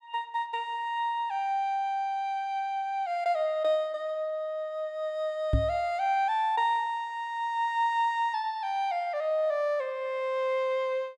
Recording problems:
knock on the microphone; at 5.5 s; peak +7 dB vs average level

